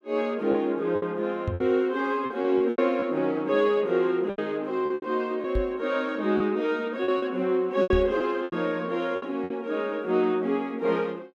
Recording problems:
packet loss; 8% of the sound replaced, filled with repeated pitch periods
microphone thump; at 1.5 s, at 5.5 s and at 8 s; peak +1 dB vs average level

